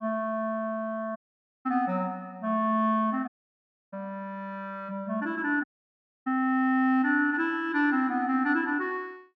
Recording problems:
dropout; at 1 s, at 3.5 s for 0.5 s and at 5.5 s for 0.5 s

